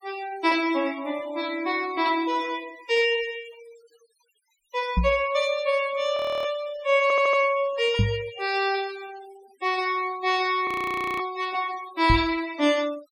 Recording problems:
noise reduction artefacts; signal-to-artefact ratio 19 dB
microphone thump; at 5 s, at 8 s and at 12 s; peak +6 dB vs average level
audio freezing; at 6 s and at 11 s for 0.5 s
audio stuttering; at 7 s

